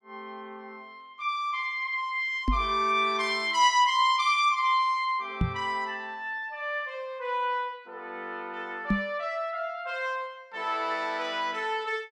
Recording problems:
microphone thump; at 2.5 s, at 5.5 s and at 9 s; peak +5 dB vs average level

